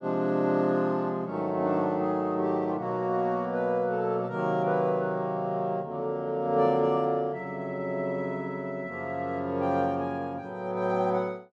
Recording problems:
none

